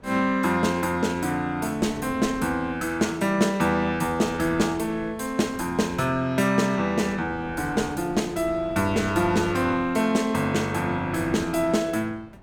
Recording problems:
wind noise; below 500 Hz, SNR 19 dB

